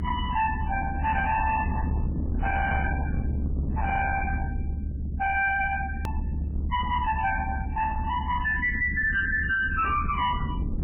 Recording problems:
lossy compression; MP3, log-spectral distance 4 dB, nothing above 2.7 kHz
distortion; hard clipping, uneven, signal-to-distortion ratio 7 dB
low-frequency rumble; below 200 Hz, strongest tone 72 Hz, SNR 4 dB
hard cut with a click; at 6 s

